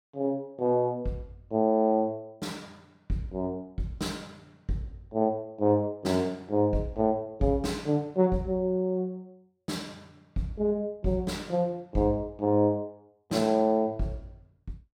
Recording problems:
none

